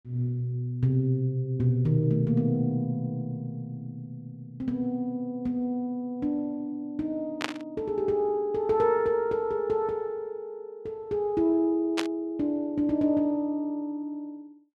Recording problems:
static burst; at 7.5 s and at 12 s; peak +3 dB vs average level

